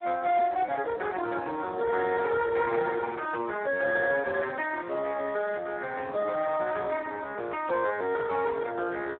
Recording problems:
phone line; 320 Hz to 2.5 kHz, Speex

